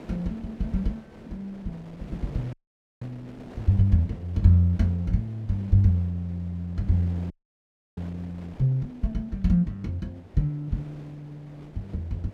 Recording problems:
wind noise; below 620 Hz, SNR 21 dB
audio freezing; at 2.5 s and at 7.5 s for 0.5 s

